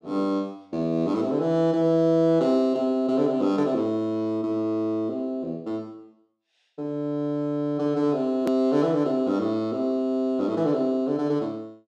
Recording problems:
hard cut with a click; at 8.5 s

